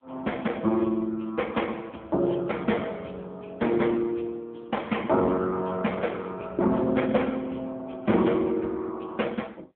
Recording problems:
phone line; 170 Hz to 3.5 kHz, AMR-NB

